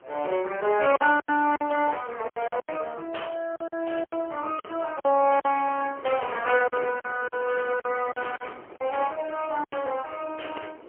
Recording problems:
phone line; 320 Hz to 2.9 kHz, AMR-NB, then MP3
wind on the microphone; below 830 Hz, SNR 20 dB
packet loss; 9% of the sound replaced, filled with silence

